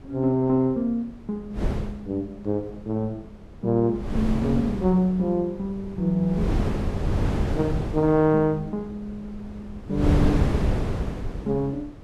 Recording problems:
wind noise; below 270 Hz, SNR 3 dB

